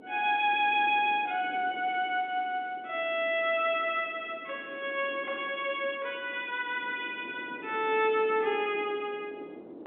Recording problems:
phone line; 260 Hz to 3.6 kHz, G.711
wind on the microphone; below 480 Hz, SNR 18 dB

